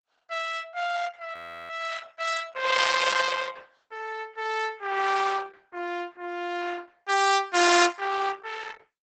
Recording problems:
lossy compression; Opus, log-spectral distance 6 dB, nothing above 7.8 kHz
frozen audio; at 1.5 s

